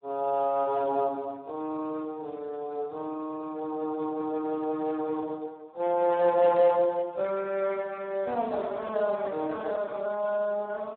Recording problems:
telephone audio; 260 Hz to 2.1 kHz, Speex

